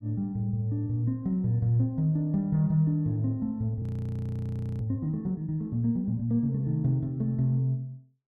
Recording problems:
audio freezing; at 4 s for 1 s

